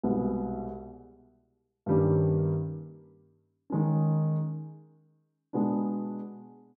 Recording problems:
none

